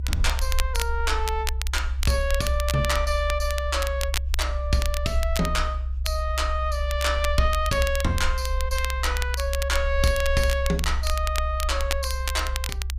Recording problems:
low-frequency rumble; below 66 Hz, strongest tone 66 Hz, SNR 2 dB
crackling; vinyl, SNR 7 dB

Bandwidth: 15 kHz